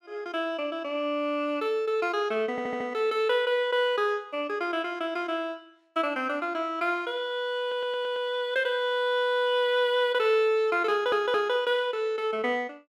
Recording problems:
stutter; at 2.5 s, at 7.5 s and at 11 s

